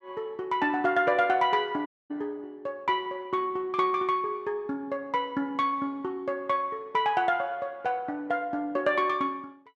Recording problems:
audio cutting out; at 2 s

